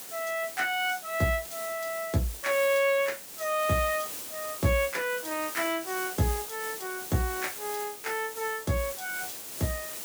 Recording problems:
background hiss; slope -1 dB per octave, SNR 8 dB

